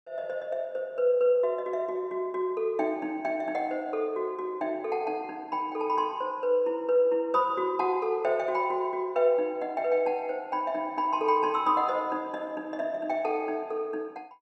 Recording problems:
none

